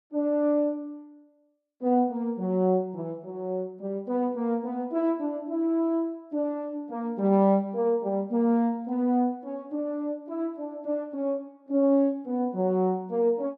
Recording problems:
none

